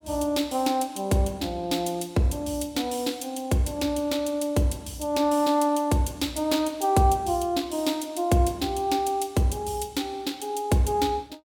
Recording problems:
none

